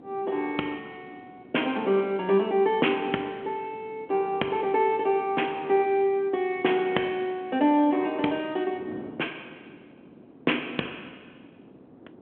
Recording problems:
telephone audio; 220 Hz to 3.4 kHz, G.726
wind noise; below 430 Hz, SNR 22 dB

